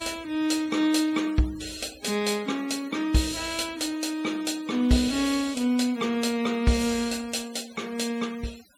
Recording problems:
denoising artefacts; signal-to-artefact ratio 19 dB

